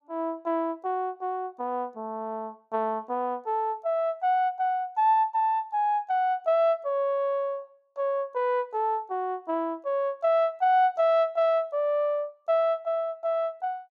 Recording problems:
none

